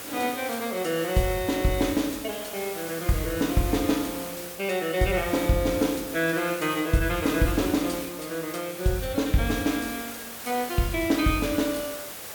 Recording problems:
hiss; slope -2 dB per octave, SNR 10 dB

